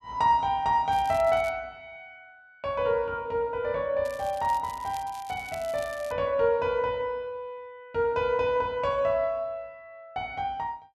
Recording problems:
crackle; at 1 s and from 4 to 6 s; loose cable, SNR 21 dB

